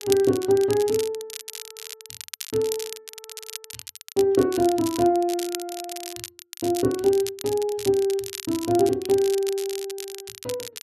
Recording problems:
crackling; vinyl, SNR 12 dB

